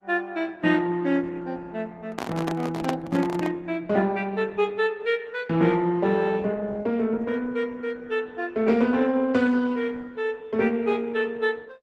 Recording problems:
lossy compression; Opus, log-spectral distance 3 dB, nothing above 12 kHz
microphone handling noise; from 2 to 3.5 s; peak +1 dB vs average level

